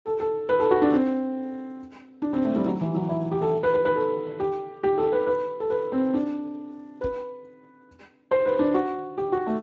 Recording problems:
lossy compression; Speex, log-spectral distance 2 dB
microphone thump; at 7 s; peak -6 dB vs average level

